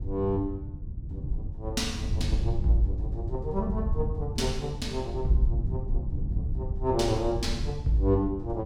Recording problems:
rumble; below 96 Hz, SNR 3 dB

